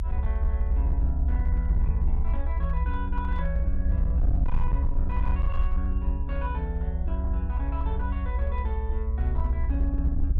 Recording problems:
distortion; hard clipping, signal-to-distortion ratio 11 dB
low-frequency rumble; below 68 Hz, SNR -8 dB

